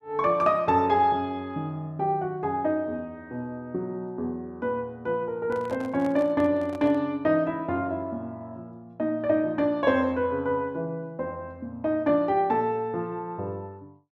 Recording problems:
microphone handling noise; from 5.5 to 7 s; peak -11 dB vs average level

